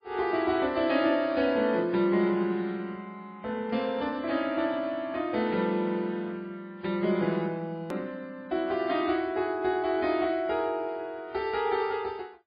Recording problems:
codec artefacts; MP3, log-spectral distance 2 dB, nothing above 13.1 kHz
hard cut with a click; at 8 s

